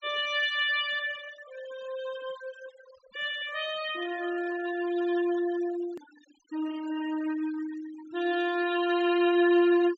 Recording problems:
treble missing; nothing above 7.8 kHz
denoising artefacts; signal-to-artefact ratio 17 dB
edit click; at 6 s

